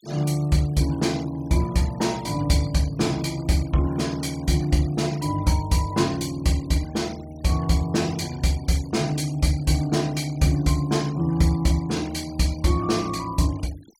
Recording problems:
noise reduction artefacts; signal-to-artefact ratio 21 dB

